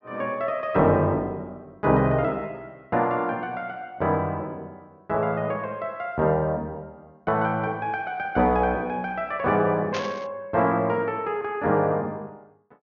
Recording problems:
low-pass filter; nothing above 6.8 kHz
burst of static; at 10 s; peak -3 dB vs average level

